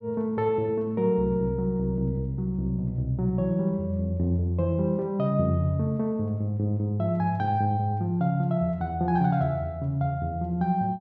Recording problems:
none

